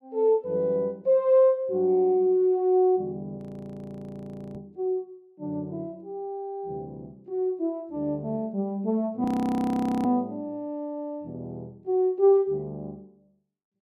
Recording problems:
audio freezing; at 3.5 s for 1 s and at 9 s for 1 s

